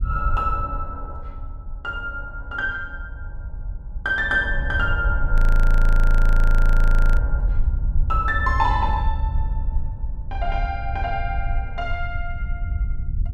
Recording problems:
low-frequency rumble; below 56 Hz, strongest tone 28 Hz, SNR 0 dB
frozen audio; at 5.5 s for 2 s

